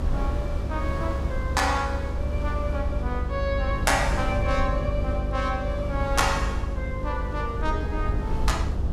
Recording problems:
hum; 50 Hz, harmonics up to 550 Hz, SNR 3 dB
low-frequency rumble; below 72 Hz, SNR 3 dB
wind on the microphone; below 350 Hz, SNR 8 dB

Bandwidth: 15.5 kHz